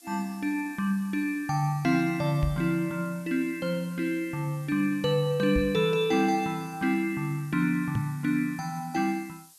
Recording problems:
hiss; SNR 24 dB
microphone thump; at 2.5 s, at 5.5 s and at 8 s; peak +2 dB vs average level

